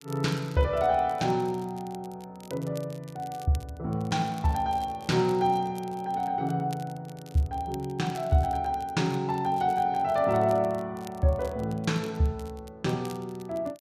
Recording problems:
crackle; vinyl, SNR 24 dB

